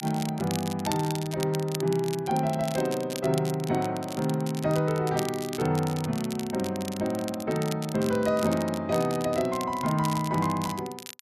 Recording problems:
crackling; vinyl, SNR 12 dB

